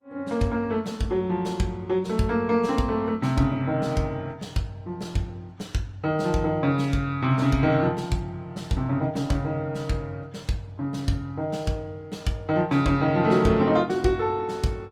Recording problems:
codec artefacts; Opus, log-spectral distance 2 dB, nothing above 19 kHz

